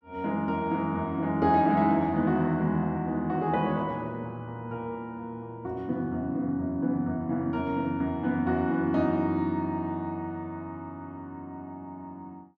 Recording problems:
none

